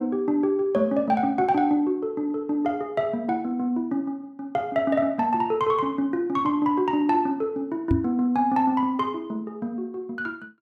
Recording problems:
microphone thump; at 8 s; peak +6 dB vs average level

